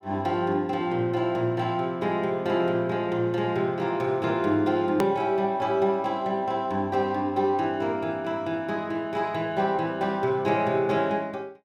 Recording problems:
edit click; at 5 s

